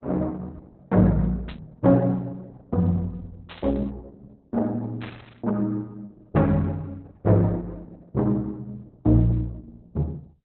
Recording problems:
lossy compression; Opus, log-spectral distance 3 dB, nothing above 4 kHz
burst of static; at 1.5 s, at 3.5 s and at 5 s; peak -12 dB vs average level

